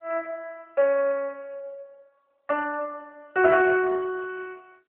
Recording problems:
telephone audio; 320 Hz to 3 kHz, AMR-NB

